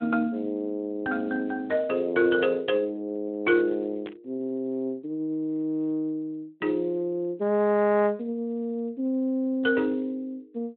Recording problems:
phone line; 220 Hz to 3.9 kHz, Speex
static burst; at 4 s; peak -13 dB vs average level

